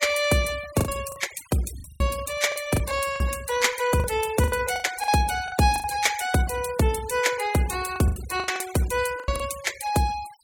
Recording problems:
noise reduction artefacts; signal-to-artefact ratio 16 dB
lost packets; 10% of the sound replaced, filled with the last packet

